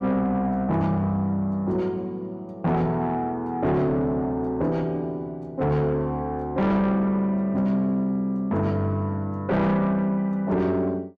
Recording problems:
distortion; soft clipping, signal-to-distortion ratio 10 dB

